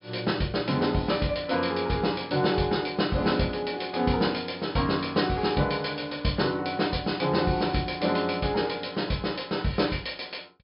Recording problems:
low-pass filter; nothing above 5.5 kHz

